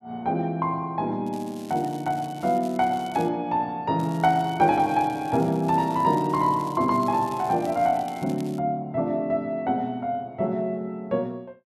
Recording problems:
crackling; from 1.5 to 3.5 s and from 4 to 8.5 s; loose cable, SNR 23 dB

